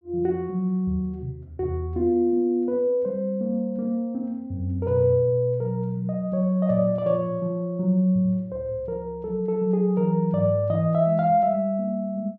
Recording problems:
none

